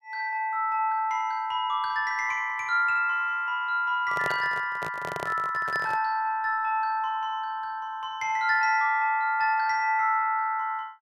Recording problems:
handling noise; from 4 to 6 s; peak -3 dB vs average level

